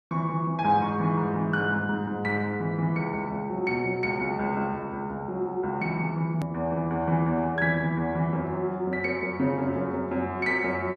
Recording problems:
edit click; at 6.5 s

